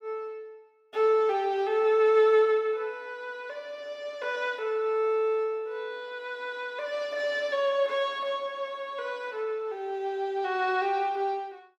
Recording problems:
none

